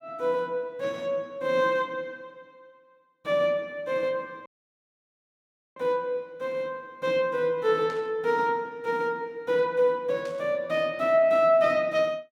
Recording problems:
dropout; at 4.5 s for 1.5 s
static burst; at 8 s and at 10 s; peak -14 dB vs average level

